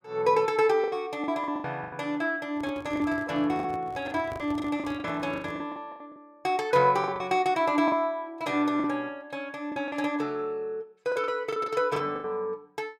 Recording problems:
packet loss; 11% of the sound replaced, filled with the last packet
microphone handling noise; from 2.5 to 5.5 s; peak -9 dB vs average level

